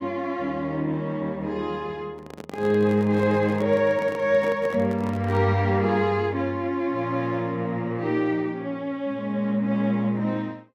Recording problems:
handling noise; from 2 to 5.5 s; peak -8 dB vs average level

